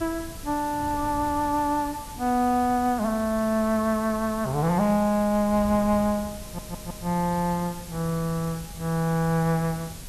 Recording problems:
background hiss; slope +1 dB per octave, SNR 17 dB
wind on the microphone; below 170 Hz, SNR 17 dB
stutter; at 6.5 s

